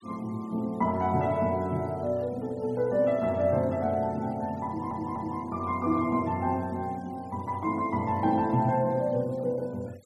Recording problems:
noise reduction artefacts; signal-to-artefact ratio 28 dB
audio stuttering; at 4.5 s

